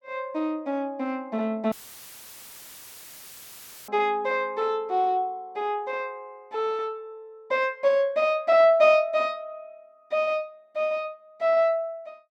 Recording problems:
audio cutting out; at 1.5 s for 2 s; filled with static

